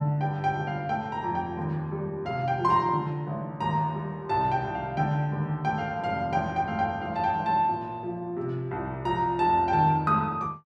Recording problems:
none

